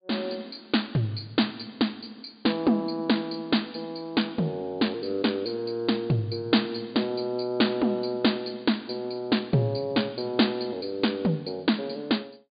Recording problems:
treble cut off; nothing above 4.8 kHz

